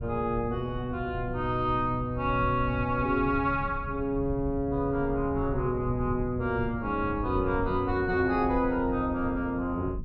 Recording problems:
rumble; below 120 Hz, SNR 10 dB

